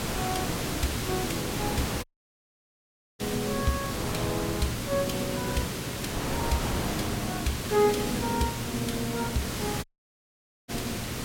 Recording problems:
electrical hum; 60 Hz, harmonics up to 840 Hz, SNR 10 dB
hiss; slope -3 dB per octave, SNR 1 dB
wind noise; below 940 Hz, SNR 7 dB
audio cutting out; at 2 s for 1 s and at 10 s for 1 s

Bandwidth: 16.5 kHz